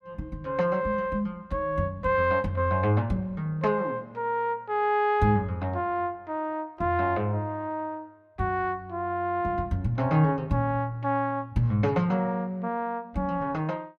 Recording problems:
none

